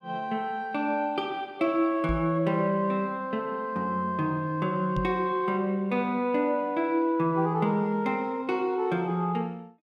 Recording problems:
microphone bump; at 2 s and at 5 s; peak 0 dB vs average level

